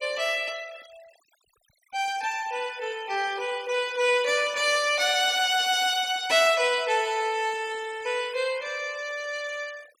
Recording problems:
denoising artefacts; signal-to-artefact ratio 21 dB

